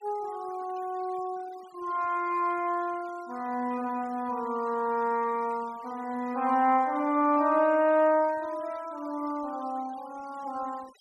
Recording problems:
denoising artefacts; signal-to-artefact ratio 24 dB

